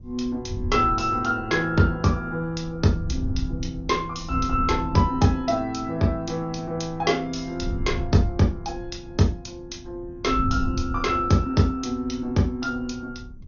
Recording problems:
codec artefacts; MP2, log-spectral distance 2 dB, nothing above 6.7 kHz
wind on the microphone; below 110 Hz, SNR 10 dB

